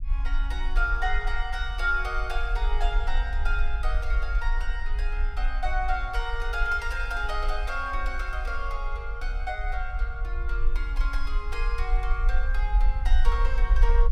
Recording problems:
rumble; below 46 Hz, SNR -2 dB

